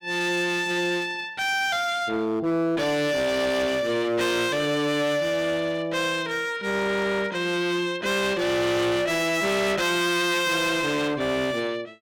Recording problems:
distortion; hard clipping, signal-to-distortion ratio 7 dB

